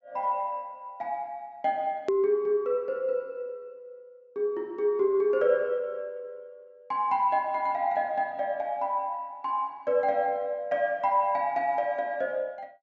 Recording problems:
low-pass filter; nothing above 7.6 kHz
edit click; at 2 s

